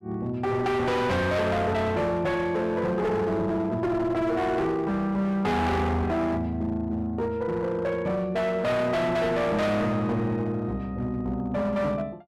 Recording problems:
distortion; hard clipping, signal-to-distortion ratio 7 dB

